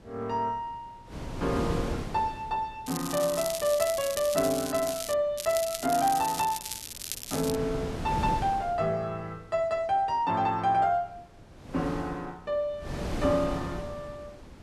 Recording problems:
wind on the microphone; below 520 Hz, SNR 8 dB
crackling; from 3 to 5 s and from 5.5 to 7.5 s; loose cable, SNR 7 dB

